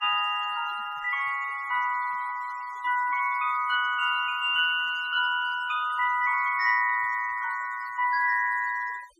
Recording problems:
denoising artefacts; signal-to-artefact ratio 20 dB

